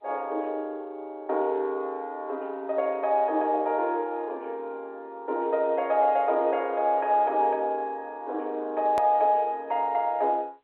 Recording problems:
telephone audio; 280 Hz to 3.4 kHz, G.711
edit click; at 9 s

